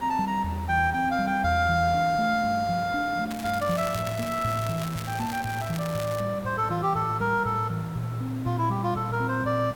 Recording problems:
background hiss; slope -6 dB per octave, SNR 16 dB
crackle; from 3.5 to 6 s; loose cable, SNR 14 dB

